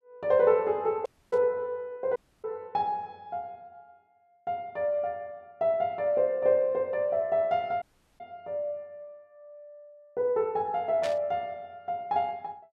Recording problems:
static burst; at 1 s and at 11 s; peak -6 dB vs average level
audio cutting out; at 1 s, at 2 s and at 8 s

